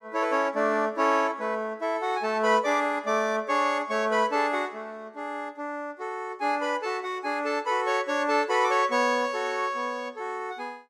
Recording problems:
none

